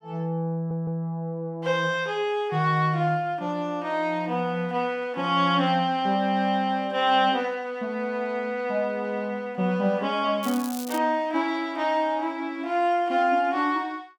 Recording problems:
stutter; at 0.5 s
crackle; at 10 s; loose cable, SNR 13 dB

